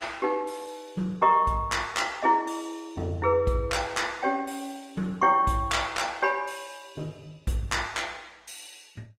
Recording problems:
lossy compression; Opus, log-spectral distance 4 dB, nothing above 17.7 kHz

